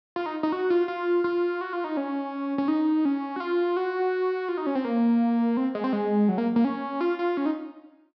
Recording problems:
treble cut off; nothing above 5.5 kHz

